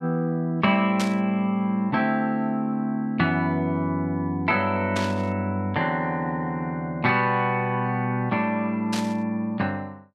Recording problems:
static burst; at 1 s, at 5 s and at 9 s; peak -1 dB vs average level

